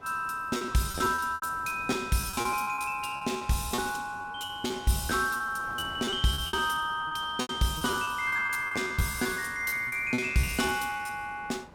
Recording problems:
wind noise; below 990 Hz, SNR 21 dB
packet loss; 19% of the sound replaced, filled with repeated pitch periods

